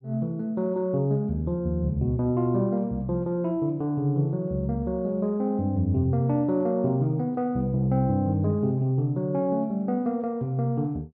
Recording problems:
treble missing; nothing above 7.5 kHz

